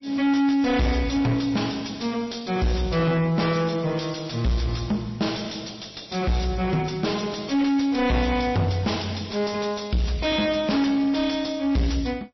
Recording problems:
codec artefacts; MP3, log-spectral distance 6 dB, nothing above 5.8 kHz
distorted audio; soft clipping, signal-to-distortion ratio 7 dB

